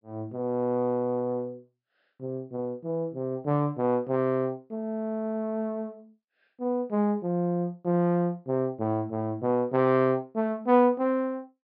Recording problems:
treble cut off; nothing above 5.5 kHz

